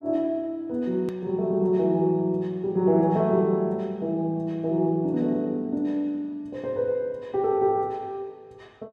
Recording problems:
click at an edit; at 1 s

